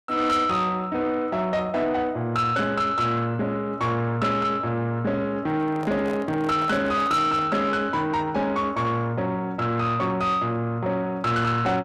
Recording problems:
distorted audio; soft clipping, signal-to-distortion ratio 11 dB
microphone handling noise; from 5.5 to 7.5 s; peak -7 dB vs average level

